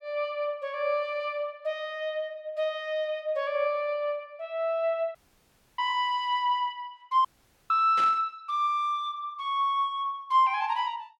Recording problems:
dropout; at 5 s for 0.5 s and at 7.5 s
burst of static; at 8 s; peak -6 dB vs average level

